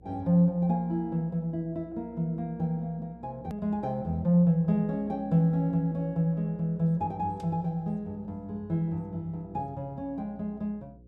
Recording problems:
hum; 60 Hz, harmonics up to 540 Hz, SNR 25 dB
edit click; at 3.5 s

